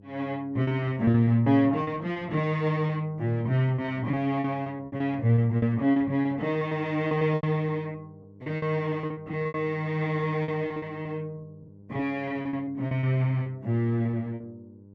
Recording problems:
electrical hum; 50 Hz, harmonics up to 600 Hz, SNR 24 dB
packet loss; 13% of the sound replaced, filled with repeated pitch periods

